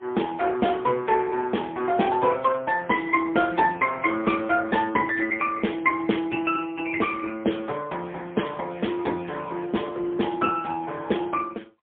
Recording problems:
telephone audio; 220 Hz to 3.5 kHz, AMR-NB, then MP3

